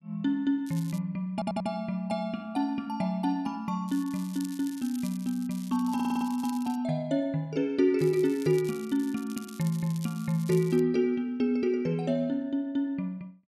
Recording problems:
crackling; at 0.5 s, from 4 to 7 s and from 8 to 11 s; loose cable, SNR 19 dB
stutter; at 1.5 s and at 6 s

